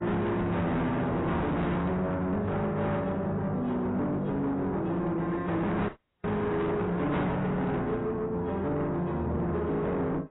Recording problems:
lossy compression; AAC, then AAC, log-spectral distance 2 dB, nothing above 3.8 kHz
distortion; soft clipping, signal-to-distortion ratio 7 dB
frozen audio; at 6 s

